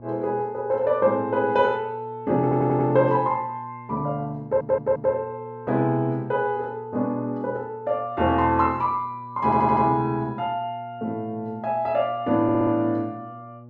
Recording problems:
hum; 60 Hz, harmonics up to 840 Hz, SNR 21 dB
audio stuttering; 4 times, first at 2.5 s

